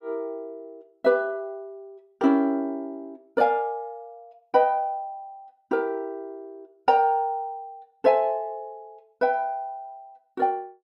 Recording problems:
none

